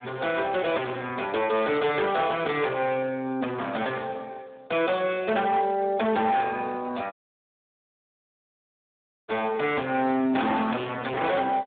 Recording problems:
phone line; 220 Hz to 3.6 kHz, Speex
distortion; soft clipping, signal-to-distortion ratio 8 dB
dropout; at 7 s for 2 s

